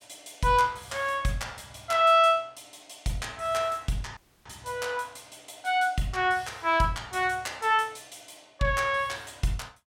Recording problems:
dropout; at 4 s

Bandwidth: 17 kHz